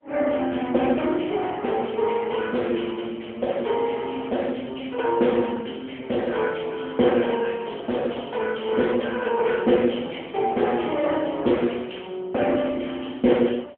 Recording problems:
phone line; 170 Hz to 3.4 kHz, AMR-NB

